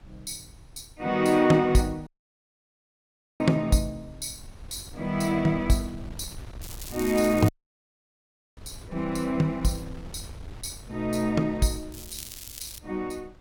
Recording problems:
wind noise; below 130 Hz, SNR 19 dB
audio cutting out; at 2 s for 1.5 s and at 7.5 s for 1 s
crackle; at 6.5 s and at 12 s; loose cable, SNR 13 dB

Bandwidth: 17 kHz